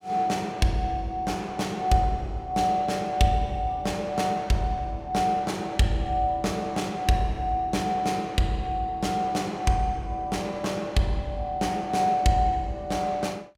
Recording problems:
none

